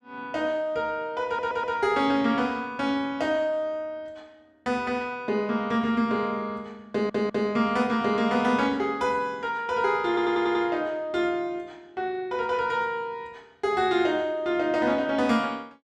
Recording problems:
stutter; at 1.5 s, at 7 s and at 10 s

